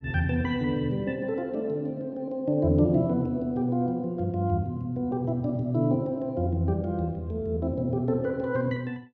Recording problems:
none

